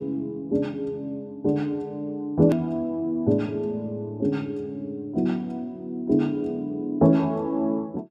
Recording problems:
click at an edit; at 2.5 s

